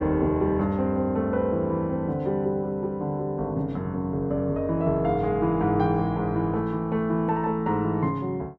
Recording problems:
none

